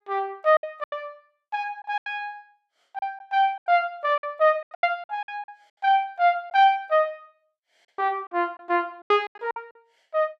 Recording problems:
lost packets; 12% of the sound replaced, filled with silence

